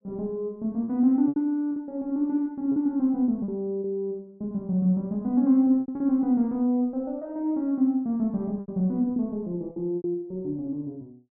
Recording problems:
packet loss; 6% of the sound replaced, filled with repeated pitch periods

